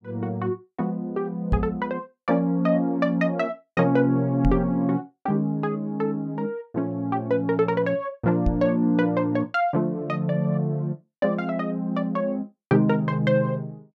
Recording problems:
microphone bump; at 1.5 s, at 4.5 s and at 8.5 s; peak +5 dB vs average level

